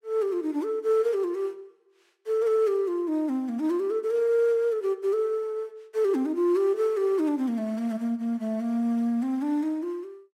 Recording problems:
none

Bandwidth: 16 kHz